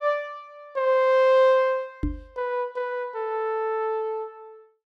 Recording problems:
microphone thump; at 2 s; peak 0 dB vs average level

